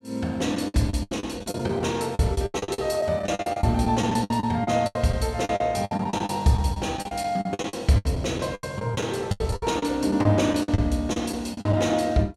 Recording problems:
packet loss; 17% of the sound replaced, filled with the last packet

